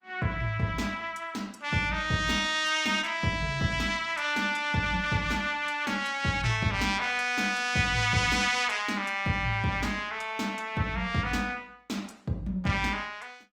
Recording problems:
lossy codec; Opus, log-spectral distance 3 dB, nothing above 19 kHz

